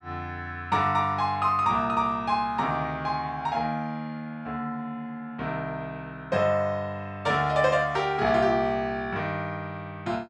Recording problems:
none

